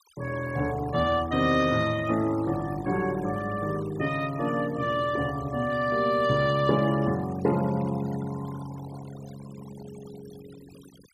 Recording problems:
denoising artefacts; signal-to-artefact ratio 19 dB

